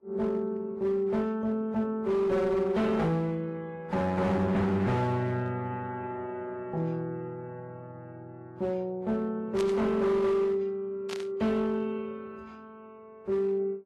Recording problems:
lossy codec; AAC, then Vorbis, log-spectral distance 2 dB, nothing above 13.1 kHz
distorted audio; hard clipping, uneven, signal-to-distortion ratio 10 dB
burst of static; at 9.5 s and at 11 s; peak -5 dB vs average level

